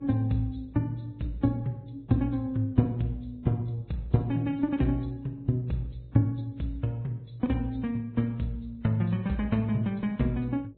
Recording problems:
low-pass filter; nothing above 3.7 kHz
lossy compression; Vorbis, log-spectral distance 2 dB
electrical hum; 50 Hz, harmonics up to 600 Hz, SNR 29 dB

